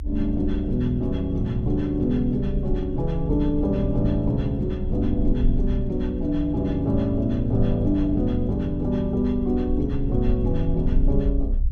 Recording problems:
low-frequency rumble; below 64 Hz, strongest tone 22 Hz, SNR 6 dB

